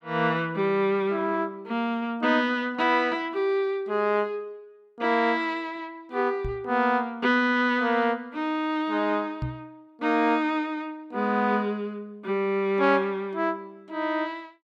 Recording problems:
microphone bump; at 6.5 s and at 9.5 s; peak -2 dB vs average level

